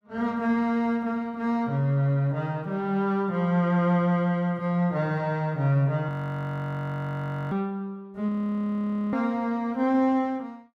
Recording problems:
frozen audio; at 6 s for 1.5 s and at 8.5 s for 1 s

